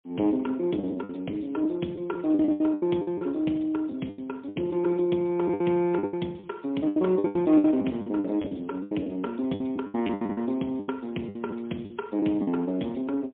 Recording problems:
telephone audio; 190 Hz to 3.9 kHz, AMR-NB, then MP3
packet loss; 14% of the sound replaced, filled with the last packet

